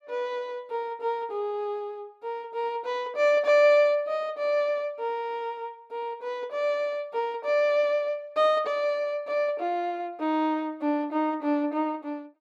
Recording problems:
none

